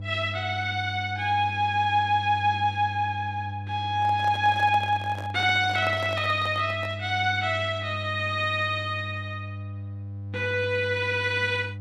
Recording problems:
mains hum; 50 Hz, harmonics up to 500 Hz, SNR 11 dB
handling noise; from 4 to 7 s; peak -7 dB vs average level

